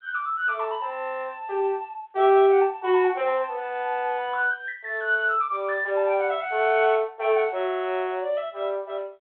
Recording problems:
phone line; 300 Hz to 3.5 kHz, G.726

